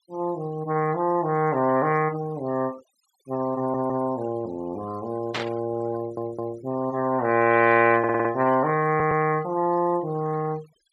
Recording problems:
denoising artefacts; signal-to-artefact ratio 23 dB
stutter; 4 times, first at 3.5 s
burst of static; at 5.5 s; peak 0 dB vs average level

